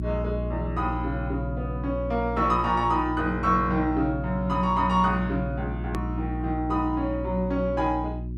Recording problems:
hum; 60 Hz, harmonics up to 360 Hz, SNR 6 dB
click at an edit; at 6 s

